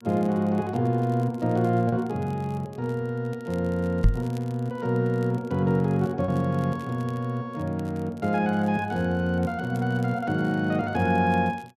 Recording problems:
crackle; vinyl, SNR 29 dB
lost packets; 0.7% of the sound replaced, filled with repeated pitch periods
knock on the microphone; at 4 s; peak +8 dB vs average level

